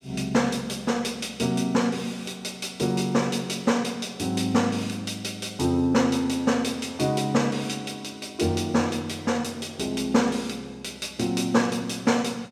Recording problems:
none

